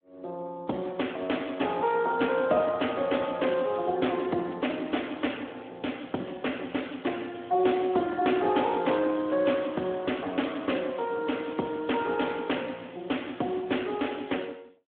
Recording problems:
phone line; 280 Hz to 3.4 kHz, Speex
crackle; from 7 to 8 s, from 9 to 10 s and from 11 to 14 s; loose cable, SNR 29 dB

